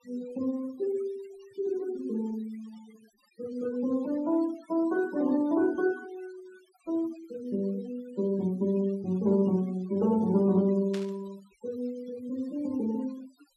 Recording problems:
noise reduction artefacts; signal-to-artefact ratio 22 dB
static burst; at 11 s; peak -8 dB vs average level

